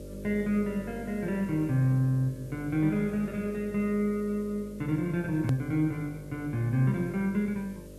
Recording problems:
hum; 50 Hz, harmonics up to 600 Hz, SNR 16 dB
hiss; slope 0 dB per octave, SNR 28 dB
click at an edit; at 5.5 s

